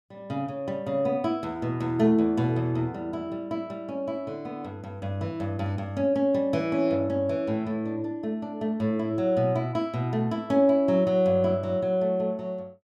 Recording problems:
none

